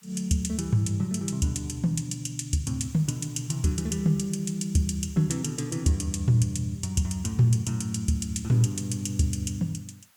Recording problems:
background hiss; SNR 29 dB

